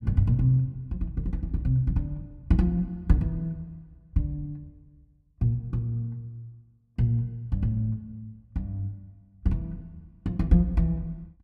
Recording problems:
none

